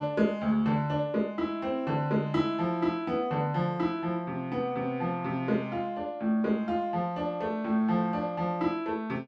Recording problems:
none

